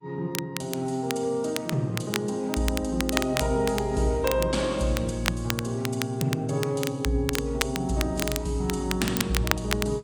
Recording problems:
lossy codec; AAC, log-spectral distance 2 dB
crackling; vinyl, SNR 6 dB

